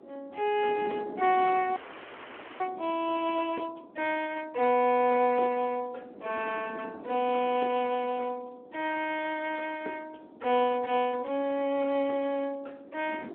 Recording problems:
telephone audio; 220 Hz to 3.3 kHz, Speex
wind on the microphone; below 520 Hz, SNR 18 dB
audio freezing; at 2 s for 1 s

